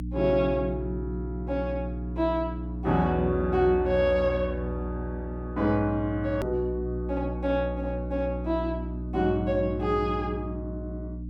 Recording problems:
hum; 60 Hz, harmonics up to 300 Hz, SNR 6 dB
click at an edit; at 6.5 s

